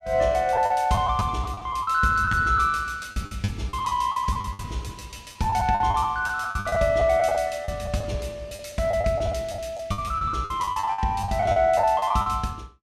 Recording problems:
lost packets; 15% of the sound replaced, filled with the last packet

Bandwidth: 14 kHz